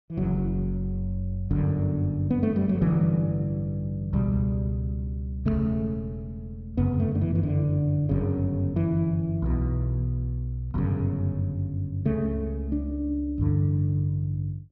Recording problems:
low-pass filter; nothing above 6.3 kHz

